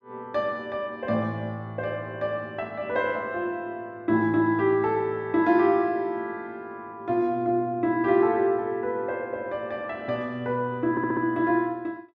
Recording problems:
audio stuttering; at 11 s

